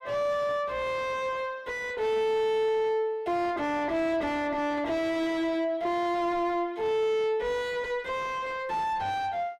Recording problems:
distorted audio; soft clipping, signal-to-distortion ratio 7 dB

